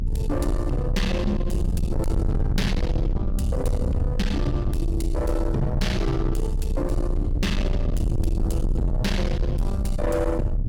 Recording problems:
distorted audio; soft clipping, signal-to-distortion ratio 7 dB
rumble; below 110 Hz, strongest tone 32 Hz, SNR -1 dB

